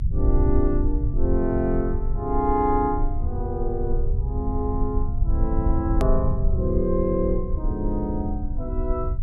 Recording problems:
low-frequency rumble; below 72 Hz, strongest tone 24 Hz, SNR 0 dB
click at an edit; at 6 s

